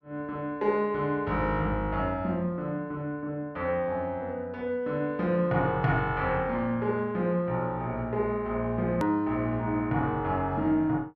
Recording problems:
edit click; at 9 s

